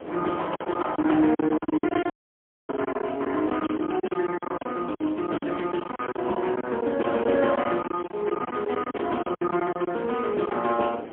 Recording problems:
telephone audio; 220 Hz to 3.4 kHz, AMR-NB, then MP3
wind noise; below 660 Hz, SNR 16 dB
lost packets; 13% of the sound replaced, filled with silence
audio cutting out; at 2 s for 0.5 s

